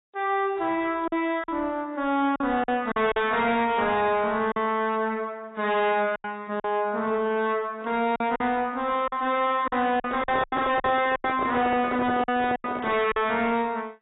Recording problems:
lossy compression; AAC, log-spectral distance 2 dB, nothing above 3.8 kHz
distorted audio; soft clipping, signal-to-distortion ratio 6 dB
packet loss; 7% of the sound replaced, filled with silence
handling noise; from 10 to 13 s; peak 0 dB vs average level

